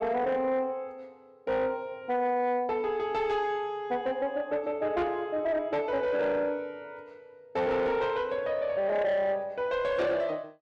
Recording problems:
distortion; soft clipping, signal-to-distortion ratio 11 dB

